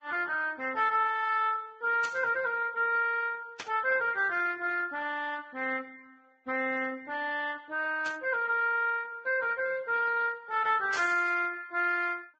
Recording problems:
lossy codec; Speex, then Vorbis, log-spectral distance 3 dB, nothing above 7.1 kHz
burst of static; 4 times, first at 2 s; peak -4 dB vs average level

